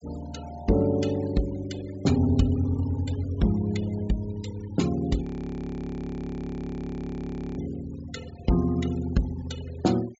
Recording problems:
low-pass filter; nothing above 8 kHz
noise reduction artefacts; signal-to-artefact ratio 18 dB
audio freezing; at 5 s for 2.5 s

